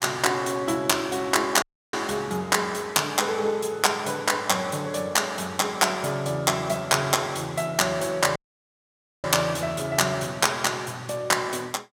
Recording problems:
dropout; at 1.5 s and at 8.5 s for 1 s

